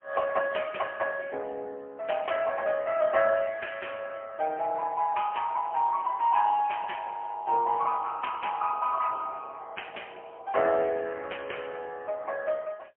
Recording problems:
telephone audio; 370 Hz to 3.2 kHz, AMR-NB, then MP3

